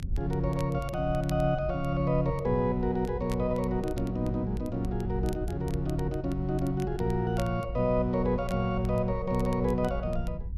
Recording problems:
rumble; below 84 Hz, SNR 9 dB
crackle; vinyl, SNR 23 dB

